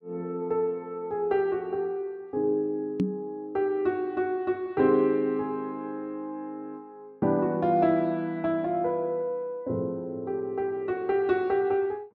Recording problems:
microphone thump; at 3 s; peak +5 dB vs average level

